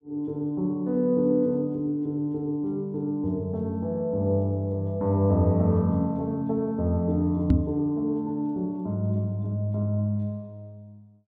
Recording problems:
microphone bump; at 7.5 s; peak +9 dB vs average level

